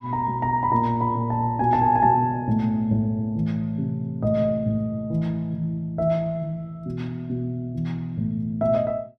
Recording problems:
none

